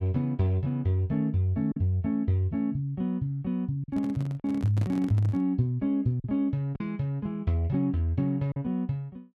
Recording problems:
packet loss; 3% of the sound replaced, filled with silence
microphone handling noise; from 4 to 5.5 s; peak -4 dB vs average level

